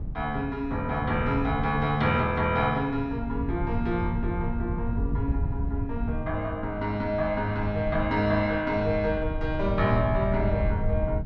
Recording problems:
wind on the microphone; below 110 Hz, SNR 6 dB

